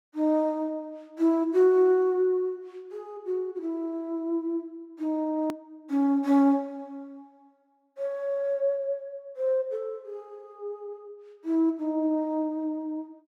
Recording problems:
click at an edit; at 5.5 s

